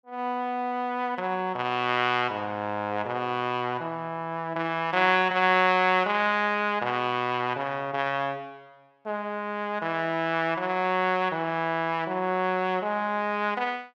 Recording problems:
none

